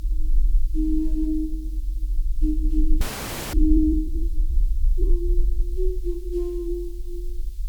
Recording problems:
hiss; SNR 27 dB
rumble; below 44 Hz, SNR -1 dB
audio freezing; at 3 s for 0.5 s

